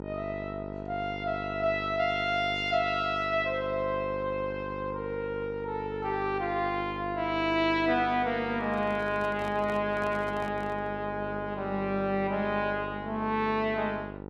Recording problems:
electrical hum; 50 Hz, harmonics up to 1.5 kHz, SNR 10 dB
handling noise; from 8.5 to 11 s; peak -9 dB vs average level

